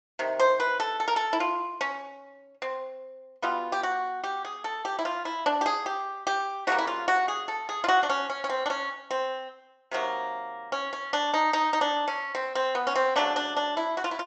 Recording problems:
low-pass filter; nothing above 8 kHz

